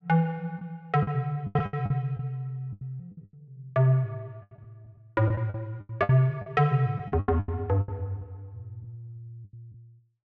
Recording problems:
lost packets; 13% of the sound replaced, filled with the last packet

